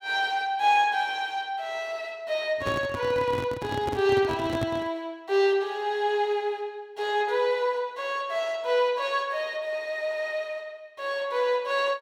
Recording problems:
microphone handling noise; from 2.5 to 5 s; peak 0 dB vs average level

